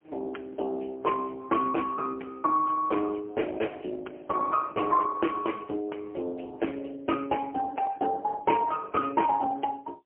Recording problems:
phone line; 280 Hz to 3.2 kHz, AMR-NB, then MP3

